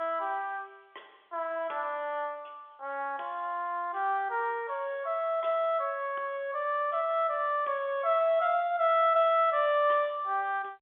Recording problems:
telephone audio; 340 Hz to 3.6 kHz, G.711

